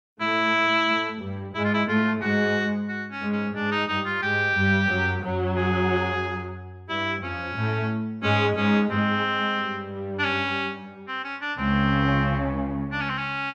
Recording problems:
none

